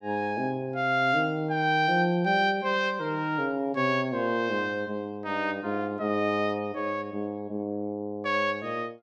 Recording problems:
none

